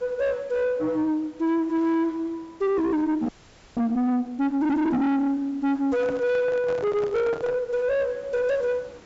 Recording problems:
treble missing; nothing above 8 kHz
distorted audio; soft clipping, signal-to-distortion ratio 5 dB
hiss; slope -6 dB per octave, SNR 27 dB
frozen audio; at 3.5 s
handling noise; from 6 to 7.5 s; peak -5 dB vs average level

